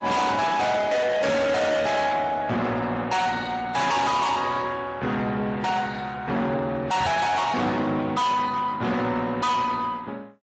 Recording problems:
lossy codec; MP3, then Speex, log-spectral distance 3 dB, nothing above 7.6 kHz
distortion; soft clipping, signal-to-distortion ratio 6 dB
knock on the microphone; at 7 s; peak -2 dB vs average level

